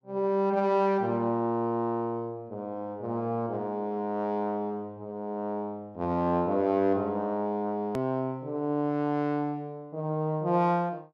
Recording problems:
click at an edit; at 8 s

